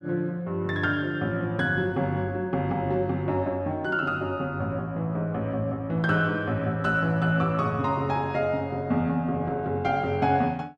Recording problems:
none

